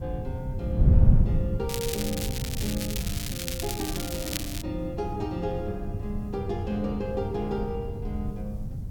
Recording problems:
background hiss; SNR 30 dB
wind on the microphone; below 120 Hz, SNR -3 dB
crackling; from 1.5 to 4.5 s; loose cable, SNR 1 dB

